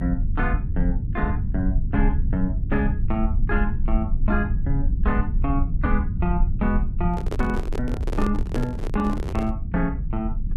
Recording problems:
low-frequency rumble; below 74 Hz, strongest tone 26 Hz, SNR -1 dB
microphone handling noise; from 7 to 9.5 s; peak +3 dB vs average level

